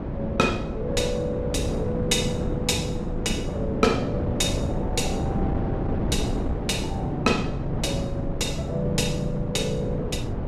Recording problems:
wind noise; below 360 Hz, SNR 1 dB

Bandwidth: 14.5 kHz